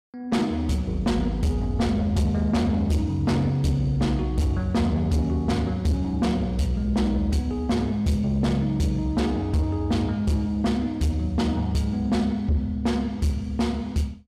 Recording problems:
distorted audio; soft clipping, signal-to-distortion ratio 11 dB

